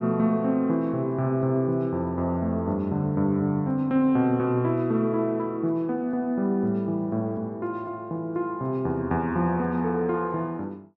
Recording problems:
none

